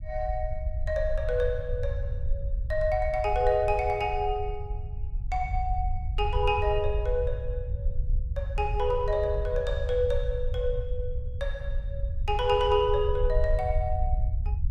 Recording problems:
rumble; below 70 Hz, SNR 4 dB

